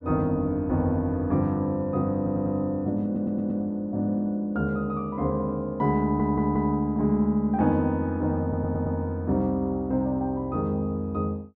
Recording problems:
audio stuttering; 4 times, first at 2 s

